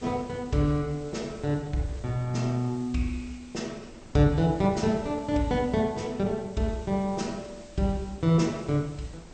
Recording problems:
codec artefacts; MP2, log-spectral distance 4 dB, nothing above 7.6 kHz
hiss; slope +1 dB per octave, SNR 25 dB
wind on the microphone; below 360 Hz, SNR 22 dB

